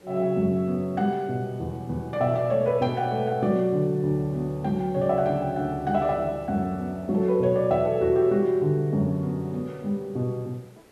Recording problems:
background hiss; SNR 29 dB

